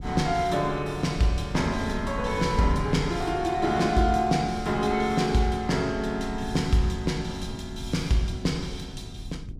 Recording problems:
wind noise; below 130 Hz, SNR 13 dB

